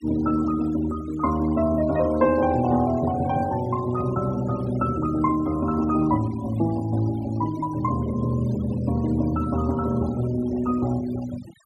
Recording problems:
denoising artefacts; signal-to-artefact ratio 19 dB

